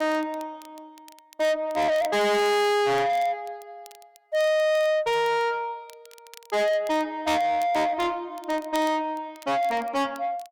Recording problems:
distortion; soft clipping, signal-to-distortion ratio 6 dB
crackle; vinyl, SNR 25 dB

